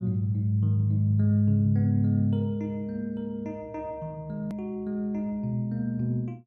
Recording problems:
hard cut with a click; at 4.5 s

